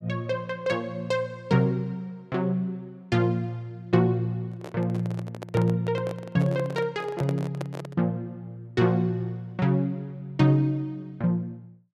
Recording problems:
microphone handling noise; from 4.5 to 8 s; peak -3 dB vs average level

